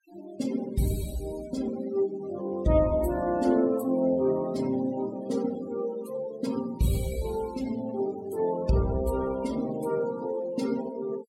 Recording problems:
denoising artefacts; signal-to-artefact ratio 18 dB

